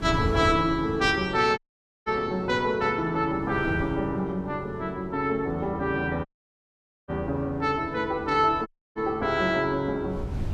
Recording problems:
wind noise; below 140 Hz, SNR 13 dB
dropout; at 1.5 s, at 6.5 s for 1 s and at 8.5 s

